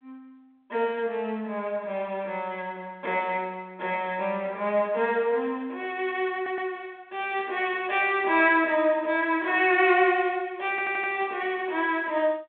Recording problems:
phone line; 280 Hz to 3.6 kHz, G.726
stutter; at 6.5 s and at 11 s

